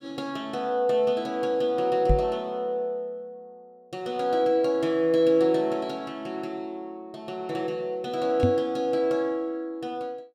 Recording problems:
microphone bump; at 2 s and at 8.5 s; peak +6 dB vs average level

